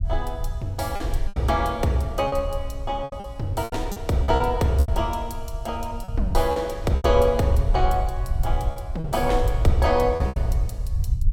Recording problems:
low-frequency rumble; below 74 Hz, SNR 5 dB
packet loss; 9% of the sound replaced, filled with repeated pitch periods

